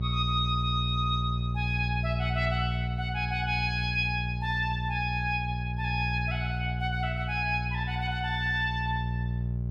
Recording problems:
electrical hum; 60 Hz, harmonics up to 420 Hz, SNR 2 dB

